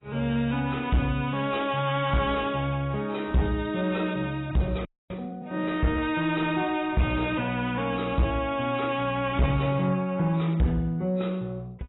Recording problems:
lossy codec; AAC, log-spectral distance 3 dB, nothing above 3.8 kHz
distorted audio; soft clipping, signal-to-distortion ratio 9 dB
frozen audio; at 5 s

